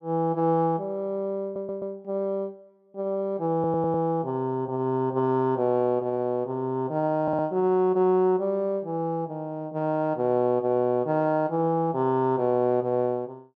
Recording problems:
audio stuttering; at 1.5 s, at 3.5 s and at 7 s

